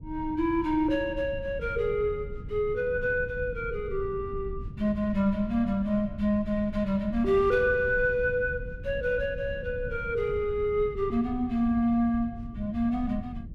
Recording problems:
rumble; below 120 Hz, SNR 13 dB

